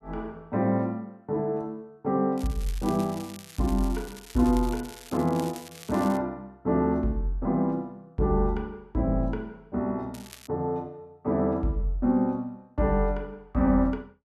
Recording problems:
crackle; from 2.5 to 6 s and at 10 s; loose cable, SNR 18 dB

